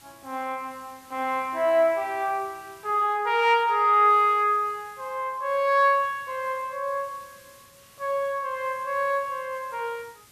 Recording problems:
background hiss; slope 0 dB per octave, SNR 27 dB

